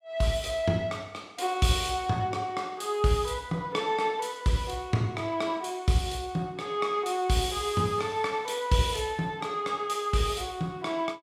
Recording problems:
none

